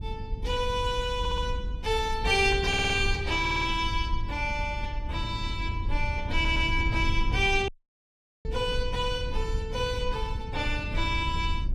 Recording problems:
lossy compression; AAC, then AAC, log-spectral distance 2 dB, nothing above 13.5 kHz
low-frequency rumble; below 80 Hz, SNR 5 dB
audio stuttering; 4 times, first at 1 s
dropout; at 7.5 s for 1 s

